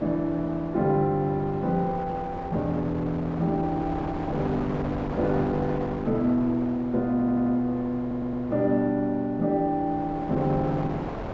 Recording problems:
treble missing; nothing above 8 kHz
wind on the microphone; below 810 Hz, SNR 10 dB
stutter; at 7 s and at 8 s

